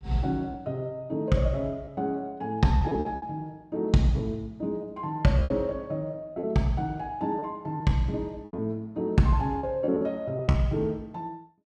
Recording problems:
lost packets; 6% of the sound replaced, filled with repeated pitch periods

